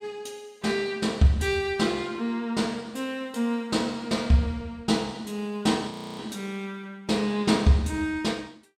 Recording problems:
frozen audio; at 6 s

